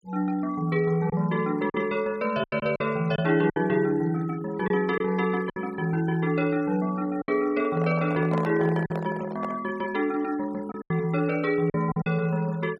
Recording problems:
denoising artefacts; signal-to-artefact ratio 21 dB
lost packets; 5% of the sound replaced, filled with silence
handling noise; from 7.5 to 9.5 s; peak -3 dB vs average level

